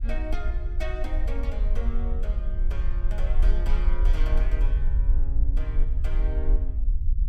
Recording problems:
low-frequency rumble; below 48 Hz, SNR -11 dB

